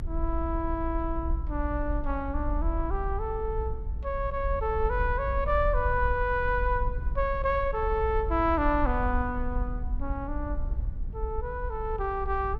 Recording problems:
rumble; below 60 Hz, SNR 4 dB

